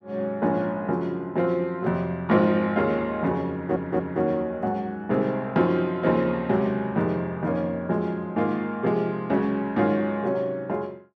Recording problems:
audio stuttering; at 3.5 s

